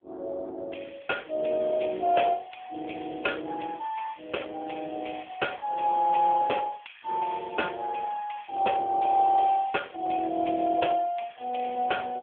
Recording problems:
phone line; 280 Hz to 3.4 kHz, AMR-NB

